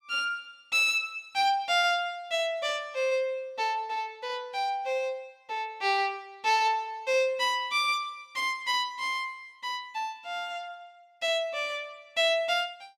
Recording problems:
none

